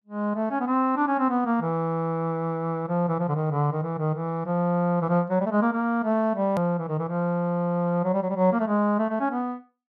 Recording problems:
edit click; at 6.5 s

